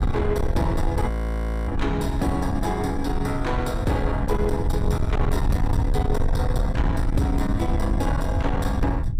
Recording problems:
distortion; soft clipping, signal-to-distortion ratio 10 dB
low-frequency rumble; below 100 Hz, SNR 1 dB
audio freezing; at 1 s for 0.5 s

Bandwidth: 15.5 kHz